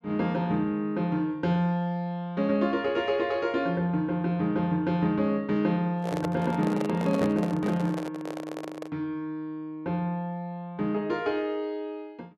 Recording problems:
microphone handling noise; from 6 to 9 s; peak -1 dB vs average level

